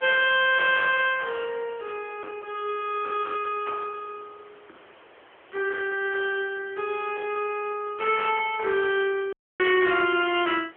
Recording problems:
telephone audio; 240 Hz to 3.5 kHz, AMR-NB
distorted audio; hard clipping, signal-to-distortion ratio 11 dB
background hiss; SNR 27 dB
audio cutting out; at 9.5 s

